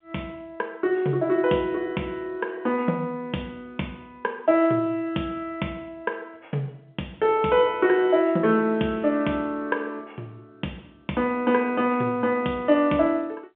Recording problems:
telephone audio; 170 Hz to 3.5 kHz, G.711

